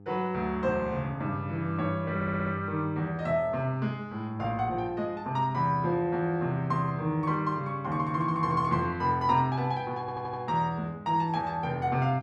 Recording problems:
mains hum; 50 Hz, harmonics up to 900 Hz, SNR 22 dB
audio stuttering; at 2 s and at 10 s

